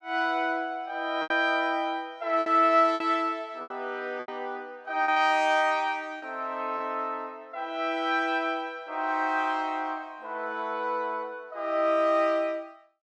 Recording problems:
lost packets; 4% of the sound replaced, filled with repeated pitch periods

